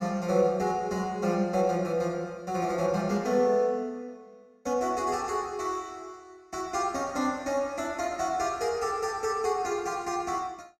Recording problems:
none

